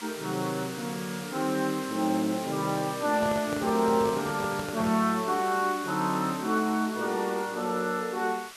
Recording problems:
hiss; SNR 12 dB
microphone handling noise; from 3 to 5 s; peak -5 dB vs average level

